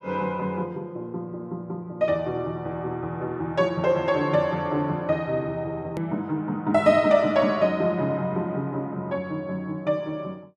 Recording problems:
click at an edit; at 6 s

